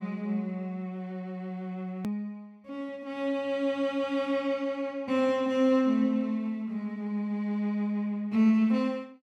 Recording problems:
hard cut with a click; at 2 s

